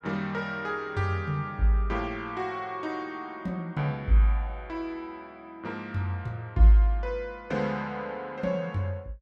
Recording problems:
none

